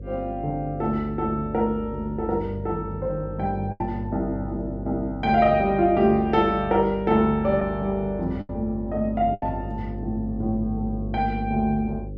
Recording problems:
electrical hum; 50 Hz, harmonics up to 550 Hz, SNR 11 dB
packet loss; 2% of the sound replaced, filled with the last packet

